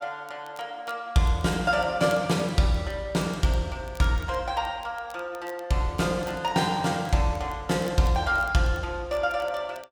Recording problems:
crackle; vinyl, SNR 26 dB

